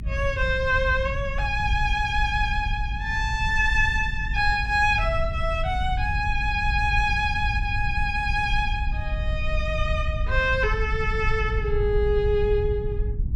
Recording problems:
rumble; below 78 Hz, SNR 5 dB

